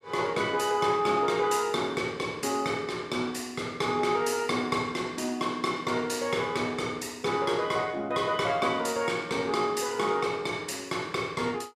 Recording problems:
none

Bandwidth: 15 kHz